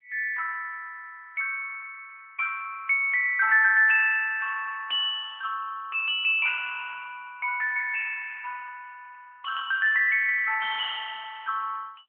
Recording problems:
telephone audio; 260 Hz to 3.8 kHz, AMR-NB

